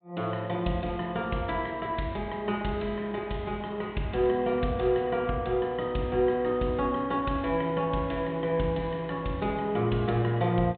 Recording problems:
treble missing; nothing above 4 kHz

